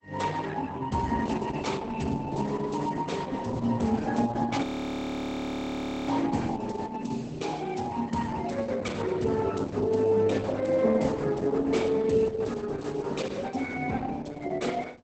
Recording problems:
lossy codec; Opus, then Opus, log-spectral distance 4 dB, nothing above 19.5 kHz
frozen audio; at 4.5 s for 1.5 s

